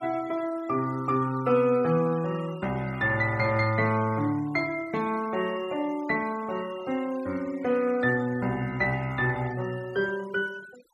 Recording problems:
denoising artefacts; signal-to-artefact ratio 20 dB

